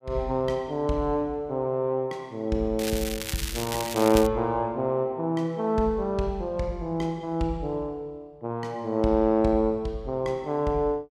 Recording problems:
crackle; from 3 to 4.5 s; loose cable, SNR 7 dB

